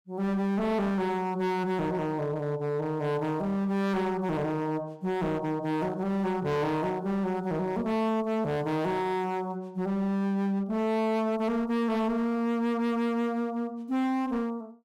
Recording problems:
distortion; hard clipping, signal-to-distortion ratio 7 dB

